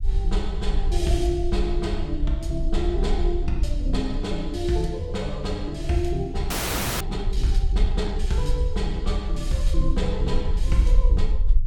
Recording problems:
low-frequency rumble; below 52 Hz, SNR 0 dB
frozen audio; at 6.5 s for 0.5 s

